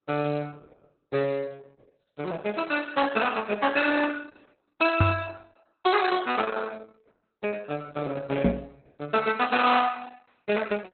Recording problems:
lossy codec; Opus, log-spectral distance 6 dB, nothing above 4 kHz
microphone thump; at 5 s and at 8.5 s; peak +8 dB vs average level

